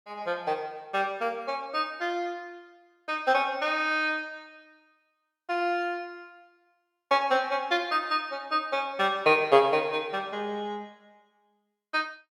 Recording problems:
none

